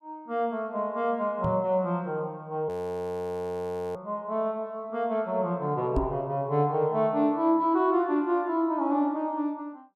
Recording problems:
microphone thump; at 1.5 s and at 6 s; peak +3 dB vs average level
frozen audio; at 2.5 s for 1.5 s

